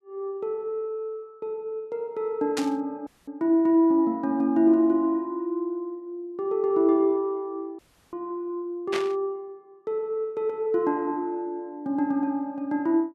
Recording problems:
burst of static; at 2.5 s and at 9 s; peak -1 dB vs average level
audio cutting out; at 3 s and at 8 s

